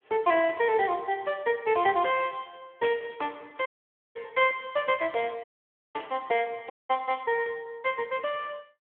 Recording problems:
telephone audio; 300 Hz to 3.4 kHz, Speex
audio cutting out; at 3.5 s, at 5.5 s for 0.5 s and at 6.5 s

